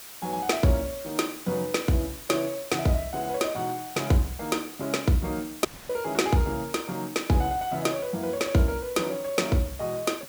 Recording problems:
hiss; slope 0 dB per octave, SNR 14 dB
audio cutting out; at 5.5 s

